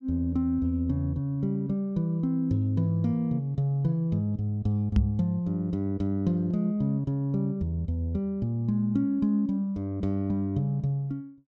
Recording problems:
microphone bump; at 5 s; peak +7 dB vs average level

